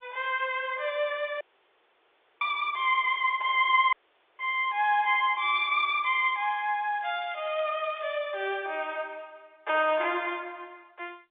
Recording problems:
phone line; 320 Hz to 3.6 kHz, G.711
audio cutting out; at 1.5 s for 1 s and at 4 s
crackle; from 7 to 8 s; loose cable, SNR 26 dB

